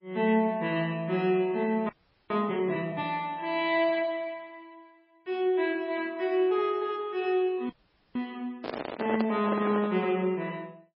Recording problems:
codec artefacts; MP3, log-spectral distance 2 dB
audio freezing; at 2 s and at 7.5 s
microphone handling noise; from 8.5 to 10 s; peak 0 dB vs average level

